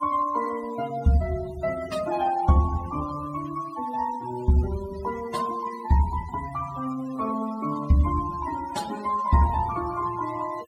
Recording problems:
noise reduction artefacts; signal-to-artefact ratio 15 dB

